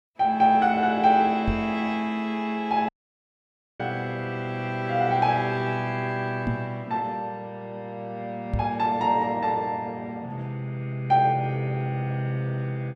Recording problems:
microphone bump; at 1.5 s, at 6.5 s and at 8.5 s; peak +2 dB vs average level
audio cutting out; at 3 s for 1 s

